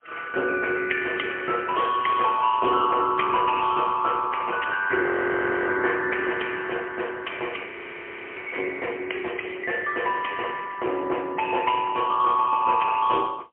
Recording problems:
phone line; 320 Hz to 3.2 kHz, AMR-NB, then MP3
frozen audio; at 5 s for 0.5 s and at 7.5 s for 0.5 s

